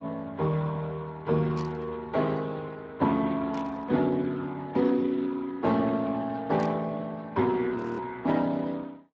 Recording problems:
lossy compression; Speex, log-spectral distance 3 dB
burst of static; at 1.5 s, at 3.5 s and at 6.5 s; peak -11 dB vs average level
frozen audio; at 8 s

